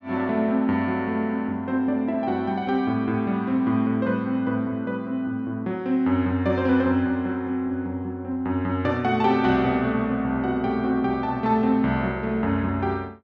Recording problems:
low-pass filter; nothing above 7.9 kHz

